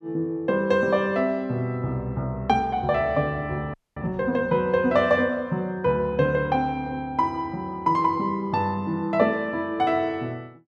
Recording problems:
frozen audio; at 3.5 s

